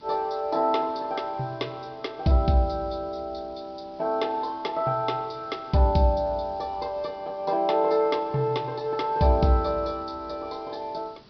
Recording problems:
treble cut off; nothing above 5.5 kHz
background hiss; SNR 27 dB

